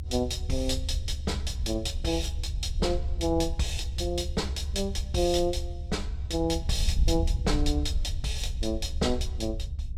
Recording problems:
rumble; below 72 Hz, strongest tone 70 Hz, SNR 6 dB
wind on the microphone; below 68 Hz, SNR 6 dB

